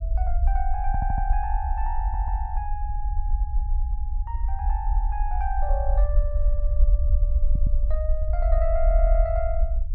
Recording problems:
low-frequency rumble; below 54 Hz, SNR -6 dB
audio stuttering; 4 times, first at 1 s

